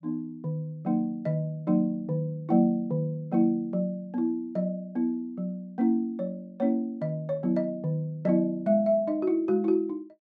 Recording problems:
none

